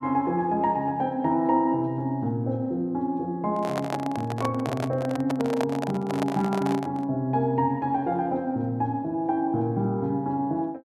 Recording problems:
handling noise; from 3.5 to 7 s; peak +1 dB vs average level

